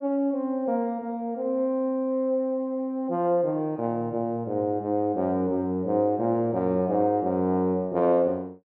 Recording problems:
none

